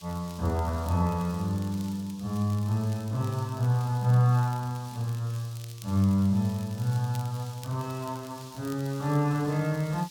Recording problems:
background hiss; SNR 21 dB
crackle; vinyl, SNR 23 dB

